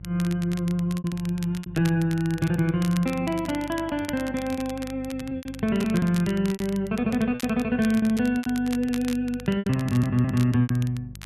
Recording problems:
hum; 50 Hz, harmonics up to 400 Hz, SNR 18 dB
crackle; vinyl, SNR 17 dB
lost packets; 10% of the sound replaced, filled with repeated pitch periods
stutter; at 10 s

